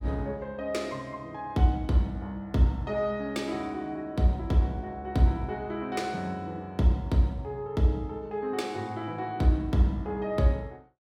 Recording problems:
none

